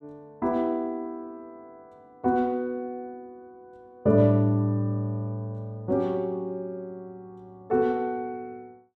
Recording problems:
none

